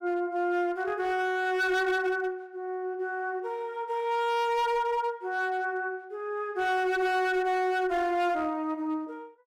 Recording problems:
distortion; hard clipping, signal-to-distortion ratio 11 dB

